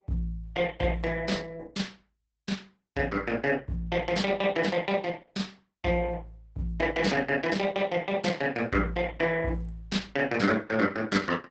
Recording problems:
lossy compression; Opus, log-spectral distance 3 dB, nothing above 8 kHz

